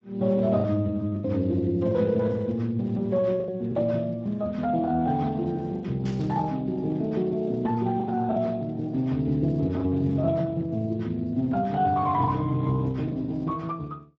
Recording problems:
lossy codec; Speex, log-spectral distance 2 dB
lost packets; 4% of the sound replaced, filled with the last packet
burst of static; at 6 s; peak -13 dB vs average level

